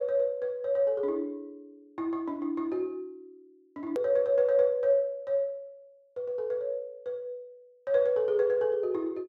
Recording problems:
hard cut with a click; at 4 s

